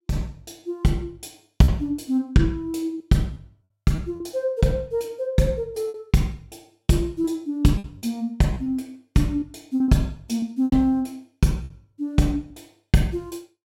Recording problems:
lost packets; 6% of the sound replaced, filled with repeated pitch periods

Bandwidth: 16 kHz